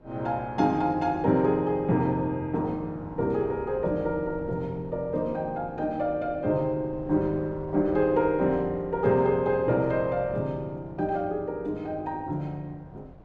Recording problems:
wind noise; below 440 Hz, SNR 20 dB

